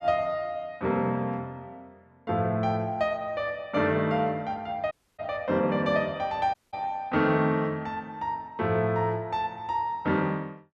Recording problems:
audio cutting out; at 5 s and at 6.5 s

